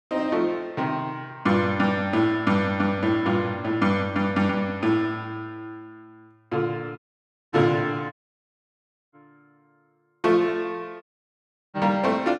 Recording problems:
audio cutting out; at 7 s for 0.5 s, at 8 s for 1 s and at 11 s for 0.5 s

